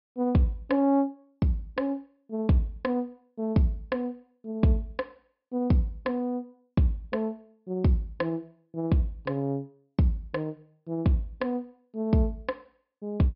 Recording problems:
low-pass filter; nothing above 5.5 kHz

